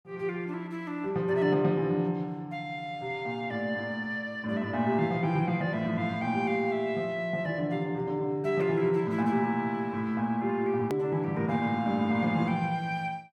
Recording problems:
hard cut with a click; at 11 s

